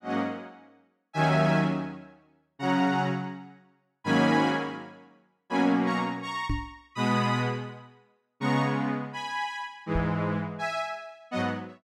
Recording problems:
microphone thump; at 6.5 s and at 10 s; peak +1 dB vs average level

